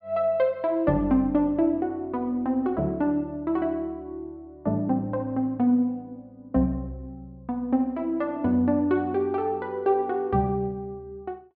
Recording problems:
treble missing; nothing above 5.5 kHz

